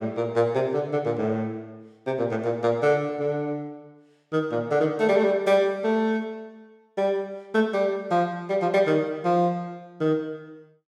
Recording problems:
none

